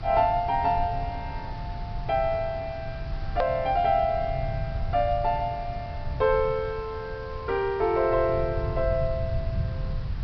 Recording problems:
treble cut off; nothing above 5.5 kHz
hiss; slope -4 dB per octave, SNR 20 dB
rumble; below 120 Hz, SNR 8 dB
click at an edit; at 3.5 s

